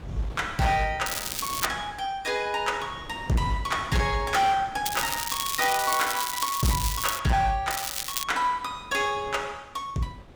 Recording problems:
distorted audio; hard clipping, signal-to-distortion ratio 11 dB
wind on the microphone; below 770 Hz, SNR 19 dB
crackling; at 1 s, from 5 to 7 s and at 7.5 s; loose cable, SNR 3 dB

